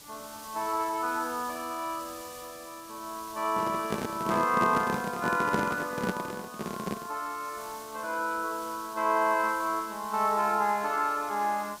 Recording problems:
background hiss; SNR 16 dB
handling noise; from 3.5 to 7 s; peak +4 dB vs average level

